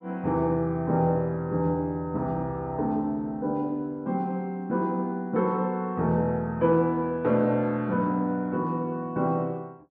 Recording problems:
none

